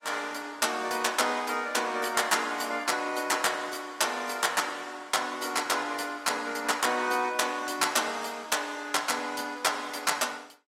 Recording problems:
lossy codec; AAC, log-spectral distance 5 dB, nothing above 14.3 kHz

